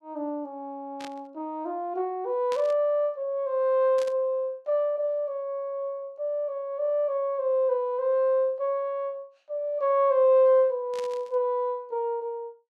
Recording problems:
static burst; 4 times, first at 1 s; peak -10 dB vs average level

